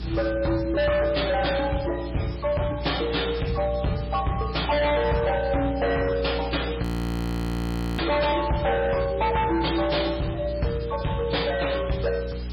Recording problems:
lossy codec; MP3, log-spectral distance 11 dB, nothing above 16.6 kHz
distortion; hard clipping, signal-to-distortion ratio 7 dB
mains hum; 60 Hz, harmonics up to 420 Hz, SNR 9 dB
hiss; slope -1 dB per octave, SNR 20 dB
audio freezing; at 7 s for 1 s

